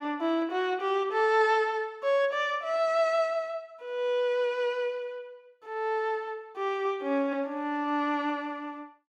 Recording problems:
none

